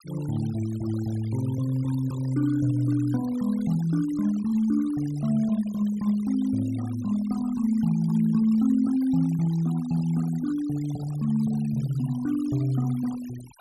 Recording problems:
denoising artefacts; signal-to-artefact ratio 22 dB

